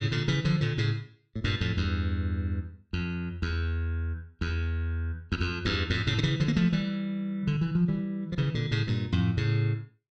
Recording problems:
none

